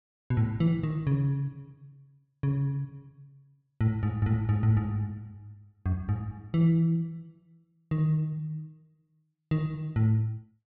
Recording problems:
none

